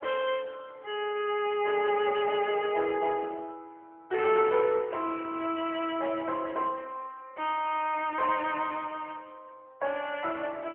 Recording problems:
phone line; 300 Hz to 3.2 kHz, AMR-NB

